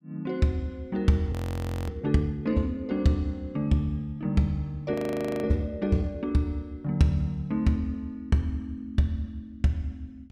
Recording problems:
frozen audio; at 1.5 s for 0.5 s and at 5 s

